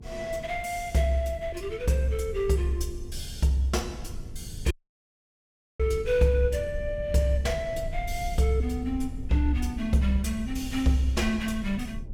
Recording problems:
hum; 50 Hz, harmonics up to 450 Hz, SNR 26 dB
low-frequency rumble; below 86 Hz, SNR 12 dB
dropout; at 4.5 s for 1 s

